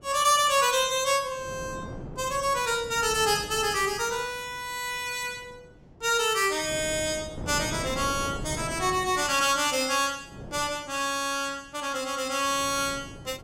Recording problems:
wind noise; below 410 Hz, SNR 15 dB

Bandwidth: 16.5 kHz